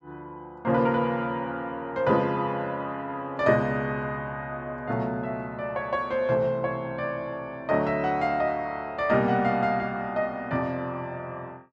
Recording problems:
none

